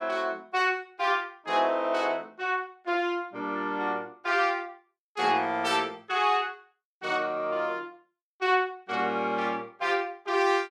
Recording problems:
none

